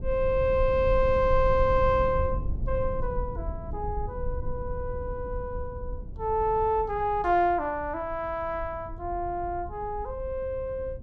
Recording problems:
rumble; below 76 Hz, SNR 8 dB

